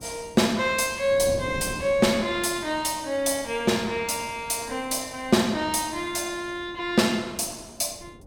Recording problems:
wind on the microphone; below 380 Hz, SNR 18 dB

